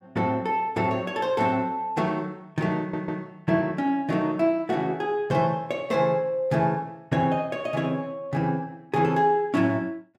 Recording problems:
stutter; at 3 s

